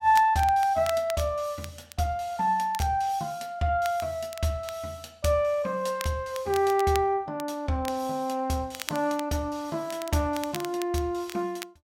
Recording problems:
crackling; vinyl, SNR 15 dB

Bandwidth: 16 kHz